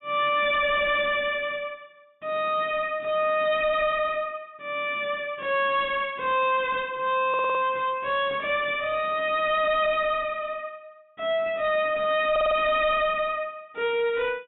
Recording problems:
low-pass filter; nothing above 3.8 kHz
distorted audio; soft clipping, signal-to-distortion ratio 6 dB
stutter; at 7.5 s and at 12 s

